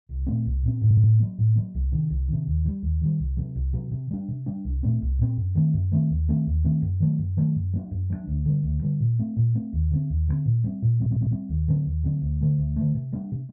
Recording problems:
stutter; at 1 s and at 11 s

